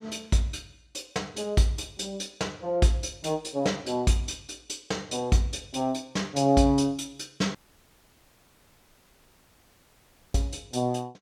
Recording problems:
audio cutting out; at 7.5 s for 3 s

